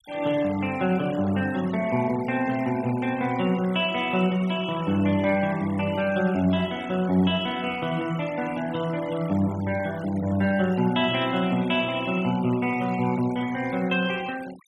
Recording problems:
noise reduction artefacts; signal-to-artefact ratio 18 dB

